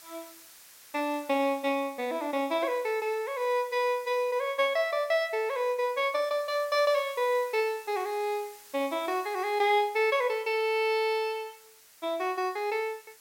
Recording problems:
background hiss; slope +2 dB per octave, SNR 22 dB

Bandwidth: 16.5 kHz